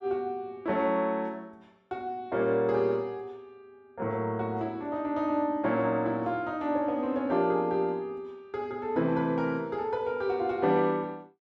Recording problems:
none

